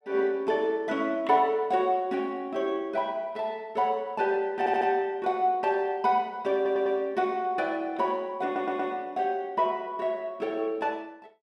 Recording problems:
stutter; at 4.5 s, at 6.5 s and at 8.5 s

